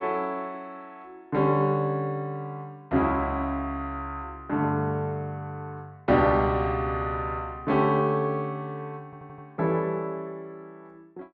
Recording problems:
stutter; at 9 s

